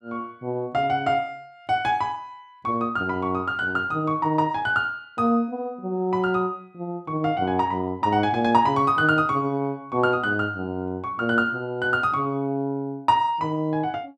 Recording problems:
none

